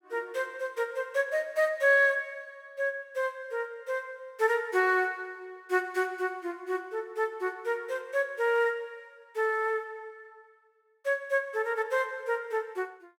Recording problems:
none

